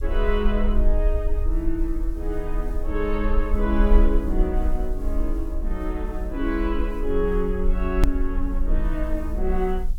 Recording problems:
background hiss; slope +4 dB per octave, SNR 29 dB
rumble; below 44 Hz, strongest tone 24 Hz, SNR -1 dB
edit click; at 8 s

